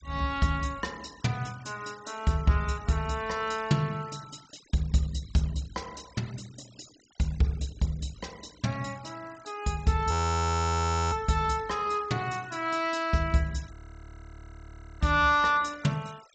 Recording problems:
low-pass filter; nothing above 8 kHz
noise reduction artefacts; signal-to-artefact ratio 23 dB
audio freezing; at 10 s for 1 s and at 14 s for 1.5 s

